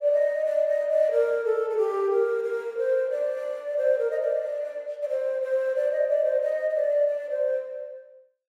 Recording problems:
none

